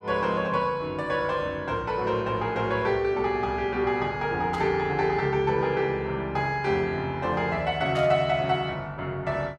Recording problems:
static burst; at 4.5 s and at 8 s; peak -12 dB vs average level

